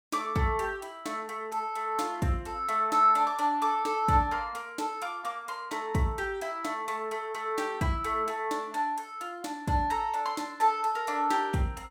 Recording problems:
none

